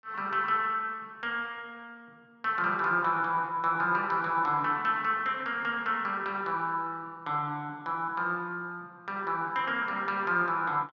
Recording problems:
none

